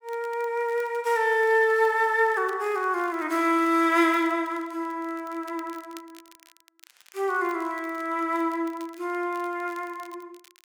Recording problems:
crackling; vinyl, SNR 28 dB

